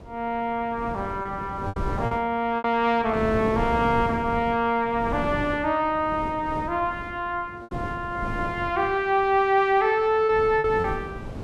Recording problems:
wind on the microphone; below 390 Hz, SNR 11 dB
packet loss; 4% of the sound replaced, filled with repeated pitch periods

